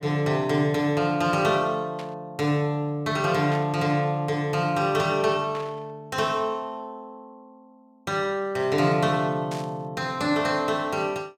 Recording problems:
burst of static; 4 times, first at 2 s; peak -10 dB vs average level

